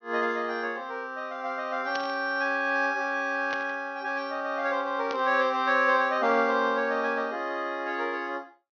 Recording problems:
low-pass filter; nothing above 6.3 kHz
burst of static; at 2 s, at 3.5 s and at 5 s; peak -6 dB vs average level

